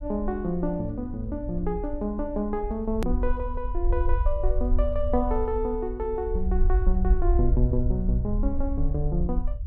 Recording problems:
rumble; below 58 Hz, SNR 0 dB
hard cut with a click; at 3 s

